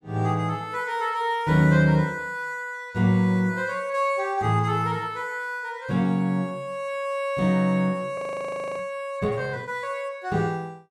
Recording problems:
frozen audio; at 8 s for 0.5 s

